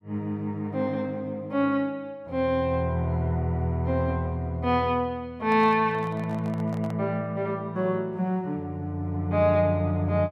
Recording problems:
handling noise; from 5.5 to 7 s; peak -10 dB vs average level

